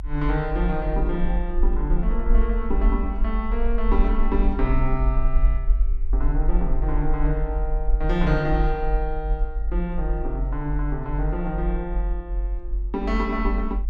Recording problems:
low-frequency rumble; below 46 Hz, SNR -1 dB

